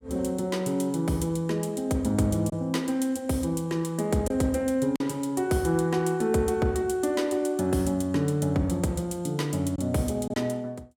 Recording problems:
lost packets; 1.3% of the sound replaced, filled with silence

